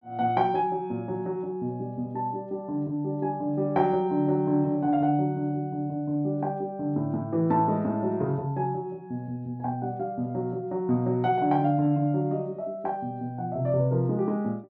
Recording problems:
none

